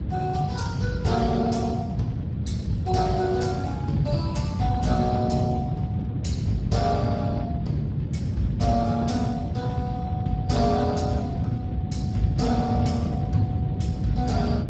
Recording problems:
lossy codec; Speex, log-spectral distance 3 dB, nothing above 7.6 kHz
low-frequency rumble; below 190 Hz, SNR 0 dB

